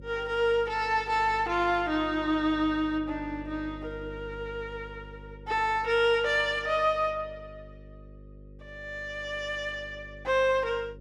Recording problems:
hum; 50 Hz, harmonics up to 550 Hz, SNR 19 dB

